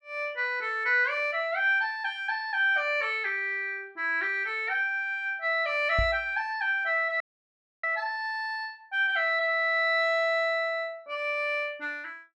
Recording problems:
microphone thump; at 6 s; peak 0 dB vs average level
audio cutting out; at 7 s for 0.5 s

